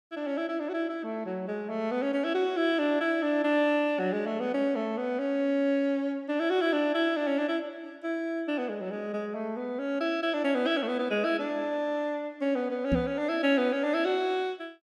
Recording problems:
microphone thump; at 13 s; peak +5 dB vs average level

